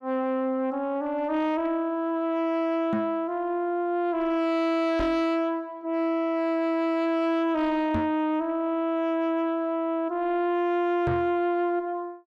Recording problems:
distorted audio; soft clipping, signal-to-distortion ratio 11 dB
microphone thump; 4 times, first at 3 s; peak +2 dB vs average level

